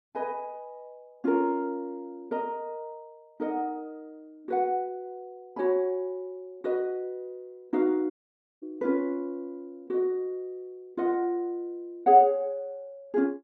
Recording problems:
dropout; at 8 s for 0.5 s

